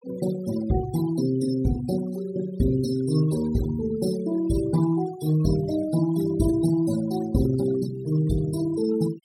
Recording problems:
denoising artefacts; signal-to-artefact ratio 14 dB

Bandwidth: 16 kHz